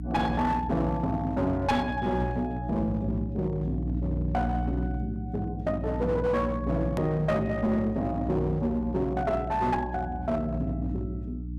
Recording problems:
distorted audio; hard clipping, uneven, signal-to-distortion ratio 11 dB
hum; 60 Hz, harmonics up to 300 Hz, SNR 6 dB
click at an edit; at 7 s

